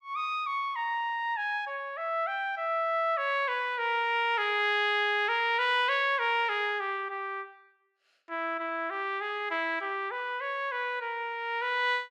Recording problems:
none

